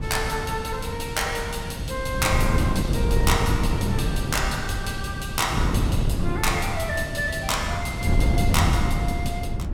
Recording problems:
wind noise; below 170 Hz, SNR -1 dB

